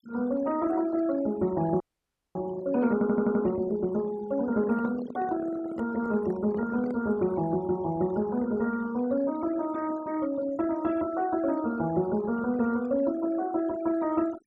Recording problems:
denoising artefacts; signal-to-artefact ratio 18 dB
frozen audio; at 2 s for 0.5 s
stutter; at 3 s
microphone handling noise; from 4.5 to 7 s; peak -6 dB vs average level

